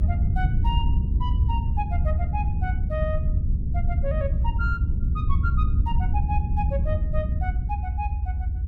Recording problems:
rumble; below 90 Hz, SNR -9 dB

